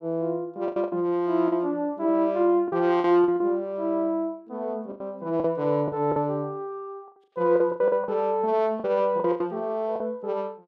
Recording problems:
packet loss; 9% of the sound replaced, filled with the last packet

